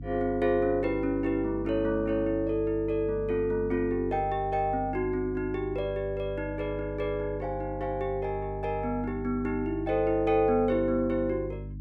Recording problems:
hum; 50 Hz, harmonics up to 300 Hz, SNR 11 dB

